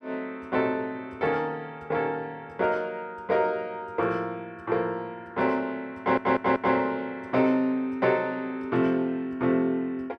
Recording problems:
audio stuttering; at 6 s

